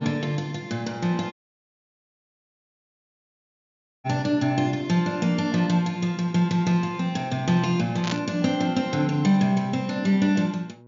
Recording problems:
low-pass filter; nothing above 7.2 kHz
hum; 60 Hz, harmonics up to 1.1 kHz, SNR 27 dB
audio cutting out; at 1.5 s for 2.5 s
burst of static; at 8 s; peak -2 dB vs average level

